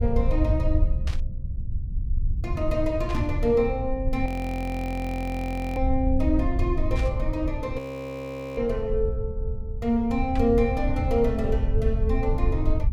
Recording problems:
low-frequency rumble; below 78 Hz, SNR 2 dB
static burst; 4 times, first at 1 s; peak -7 dB vs average level
audio freezing; at 4.5 s for 1.5 s and at 8 s for 1 s

